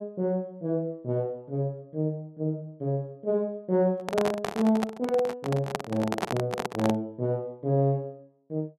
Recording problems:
microphone handling noise; from 4 to 7 s; peak +4 dB vs average level

